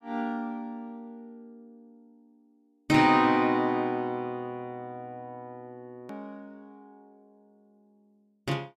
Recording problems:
edit click; at 6 s

